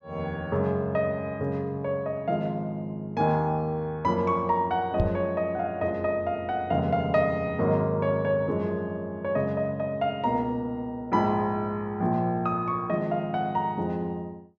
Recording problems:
microphone bump; at 5 s; peak +6 dB vs average level

